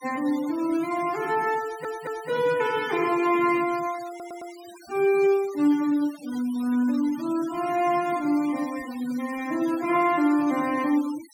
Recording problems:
noise reduction artefacts; signal-to-artefact ratio 18 dB
stutter; at 1.5 s and at 4 s

